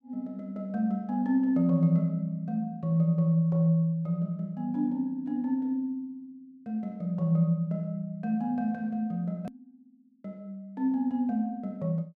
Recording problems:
hard cut with a click; at 9.5 s

